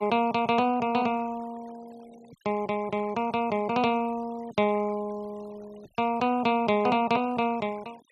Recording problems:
noise reduction artefacts; signal-to-artefact ratio 24 dB

